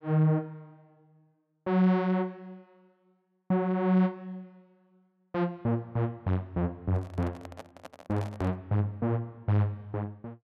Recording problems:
handling noise; from 7 to 8.5 s; peak -8 dB vs average level

